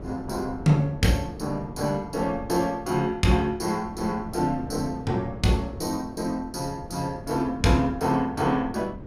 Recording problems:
wind on the microphone; below 320 Hz, SNR 14 dB

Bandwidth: 15 kHz